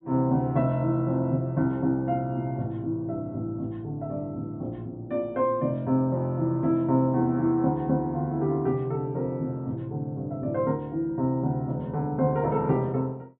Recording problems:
treble missing; nothing above 4 kHz

